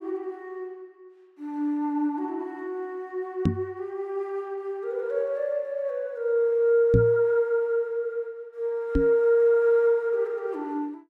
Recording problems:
microphone thump; at 3.5 s, at 7 s and at 9 s; peak +7 dB vs average level

